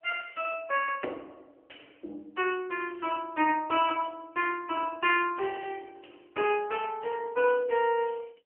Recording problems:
phone line; 260 Hz to 3.1 kHz, AMR-NB

